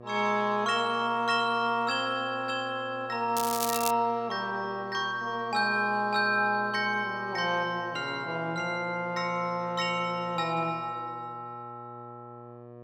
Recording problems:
hum; 60 Hz, harmonics up to 1.7 kHz, SNR 19 dB
crackling; at 3.5 s; loose cable, SNR 5 dB

